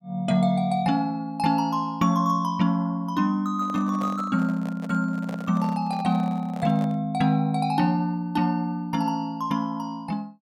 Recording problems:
handling noise; from 3.5 to 7 s; peak -9 dB vs average level

